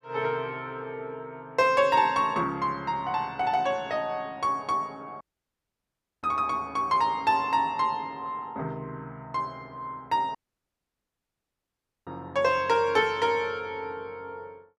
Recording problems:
audio cutting out; at 5 s for 1 s and at 10 s for 1.5 s

